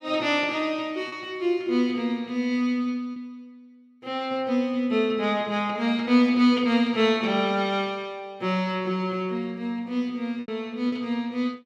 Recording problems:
lost packets; 1.8% of the sound replaced, filled with repeated pitch periods

